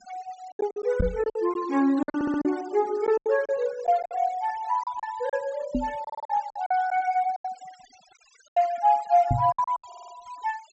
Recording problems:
treble cut off; nothing above 7.8 kHz
noise reduction artefacts; signal-to-artefact ratio 20 dB
lost packets; 12% of the sound replaced, filled with silence
knock on the microphone; at 1 s, at 6 s and at 9.5 s; peak +4 dB vs average level
audio stuttering; at 2 s, at 6 s and at 10 s

